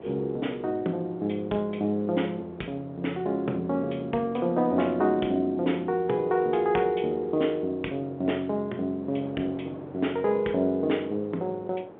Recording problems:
telephone audio; 220 Hz to 3.6 kHz, G.711
wind on the microphone; below 630 Hz, SNR 18 dB

